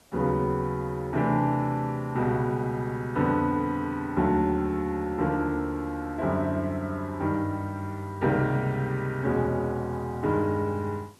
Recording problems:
hiss; slope -4 dB per octave, SNR 30 dB

